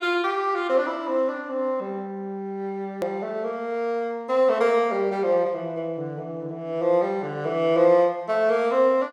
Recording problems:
edit click; at 3 s

